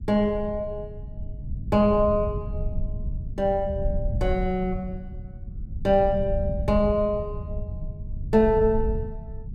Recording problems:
low-frequency rumble; below 100 Hz, SNR 8 dB

